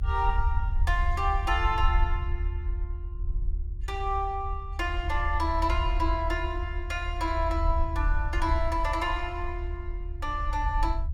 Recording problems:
low-frequency rumble; below 74 Hz, SNR 1 dB

